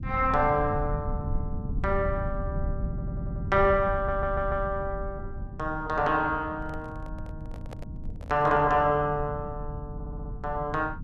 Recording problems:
low-frequency rumble; below 130 Hz, SNR 9 dB
stutter; at 3 s, at 4 s and at 10 s
handling noise; from 6.5 to 8.5 s; peak -12 dB vs average level

